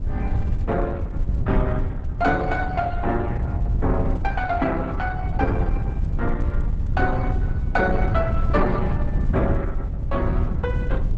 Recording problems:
codec artefacts; Opus, log-spectral distance 2 dB, nothing above 7.6 kHz
wind on the microphone; below 100 Hz, SNR 0 dB

